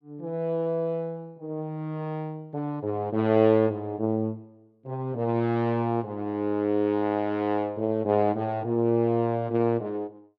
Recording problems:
none

